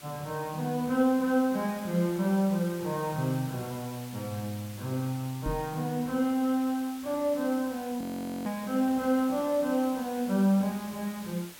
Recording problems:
hiss; slope 0 dB per octave, SNR 17 dB
microphone thump; at 5.5 s; peak -3 dB vs average level
audio freezing; at 8 s

